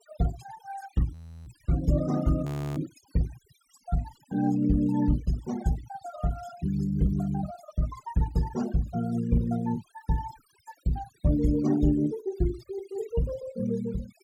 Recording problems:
noise reduction artefacts; signal-to-artefact ratio 18 dB
audio freezing; at 1 s and at 2.5 s

